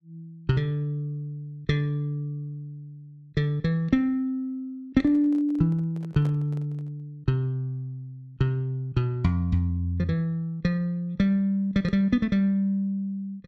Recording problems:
handling noise; from 5 to 7 s; peak -10 dB vs average level

